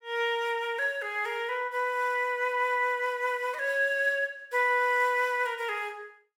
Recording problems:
none

